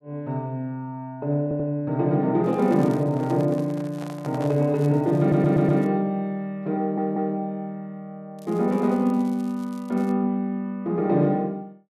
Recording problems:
audio stuttering; at 1.5 s, at 5 s and at 7 s
crackling; from 2.5 to 6 s and from 8.5 to 10 s; loose cable, SNR 29 dB
handling noise; from 2.5 to 4.5 s; peak -9 dB vs average level

